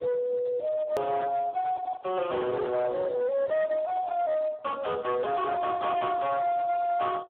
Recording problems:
phone line; 260 Hz to 3 kHz, Speex
distorted audio; hard clipping, uneven, signal-to-distortion ratio 10 dB
edit click; at 1 s

